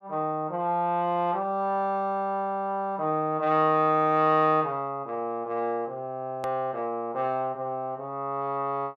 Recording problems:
hard cut with a click; at 6.5 s

